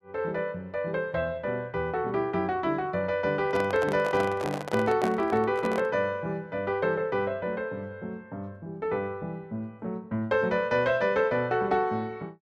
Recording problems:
handling noise; from 3.5 to 6 s; peak -1 dB vs average level

